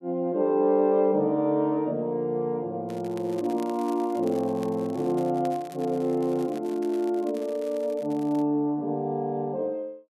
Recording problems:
crackle; from 3 to 8.5 s; loose cable, SNR 24 dB

